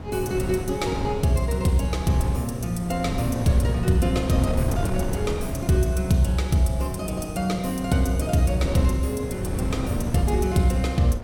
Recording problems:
wind on the microphone; below 240 Hz, SNR 7 dB

